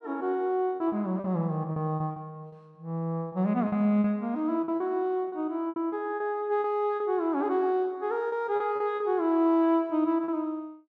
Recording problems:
packet loss; 9% of the sound replaced, filled with repeated pitch periods

